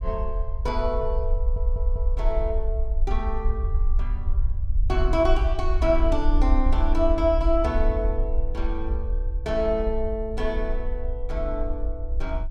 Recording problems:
low-frequency rumble; below 56 Hz, SNR 0 dB
stutter; at 1.5 s

